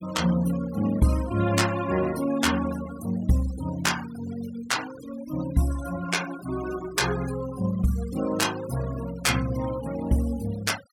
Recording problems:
denoising artefacts; signal-to-artefact ratio 15 dB

